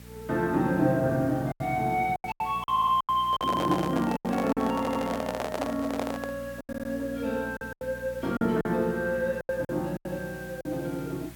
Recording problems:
hum; 60 Hz, harmonics up to 600 Hz, SNR 18 dB
background hiss; SNR 22 dB
lost packets; 10% of the sound replaced, filled with silence
audio stuttering; at 2.5 s, at 5 s and at 6.5 s
handling noise; from 3.5 to 6.5 s; peak +1 dB vs average level

